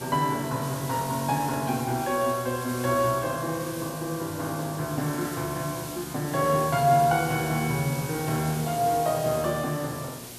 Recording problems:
hum; 60 Hz, harmonics up to 1.2 kHz, SNR 23 dB
hiss; SNR 11 dB

